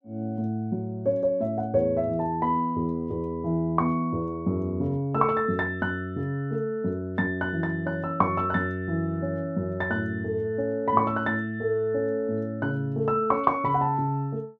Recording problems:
none

